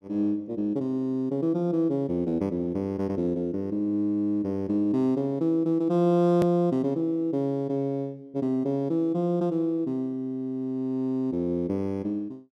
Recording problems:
edit click; at 6.5 s

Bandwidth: 14 kHz